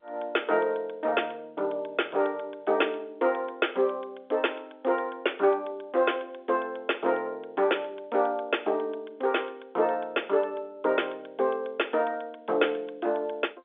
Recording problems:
phone line; 300 Hz to 3.6 kHz, G.711

